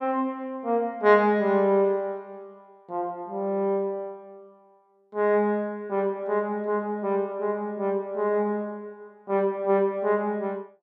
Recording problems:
none

